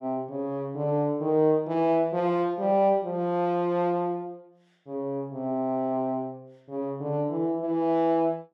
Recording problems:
none

